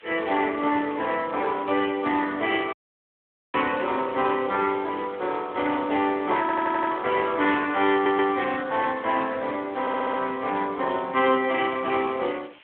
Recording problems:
phone line; 240 Hz to 3.5 kHz, Speex
hiss; SNR 24 dB
audio cutting out; at 2.5 s for 1 s
stutter; at 6.5 s, at 8 s and at 10 s

